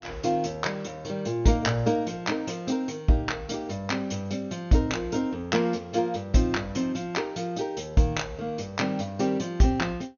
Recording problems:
low-pass filter; nothing above 6.6 kHz

